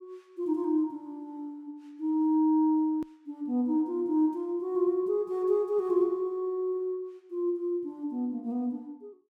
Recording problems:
edit click; at 3 s

